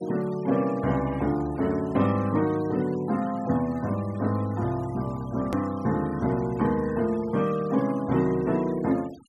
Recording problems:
denoising artefacts; signal-to-artefact ratio 21 dB
edit click; at 5.5 s

